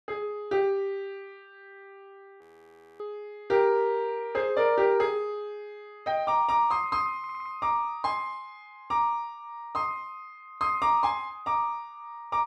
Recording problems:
frozen audio; at 2.5 s for 0.5 s
audio stuttering; at 7 s

